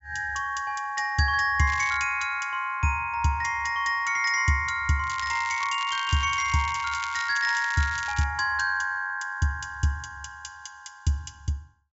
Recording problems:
low-pass filter; nothing above 8 kHz
crackle; at 1.5 s and from 5 to 8.5 s; loose cable, SNR 14 dB

